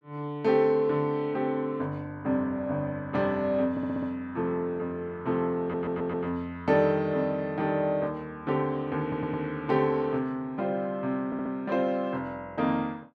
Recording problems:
audio stuttering; 4 times, first at 3.5 s

